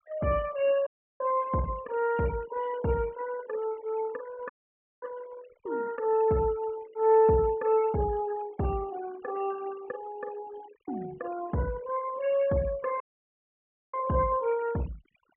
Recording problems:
treble missing; nothing above 3.1 kHz
denoising artefacts; signal-to-artefact ratio 20 dB
dropout; at 1 s, at 4.5 s for 0.5 s and at 13 s for 1 s

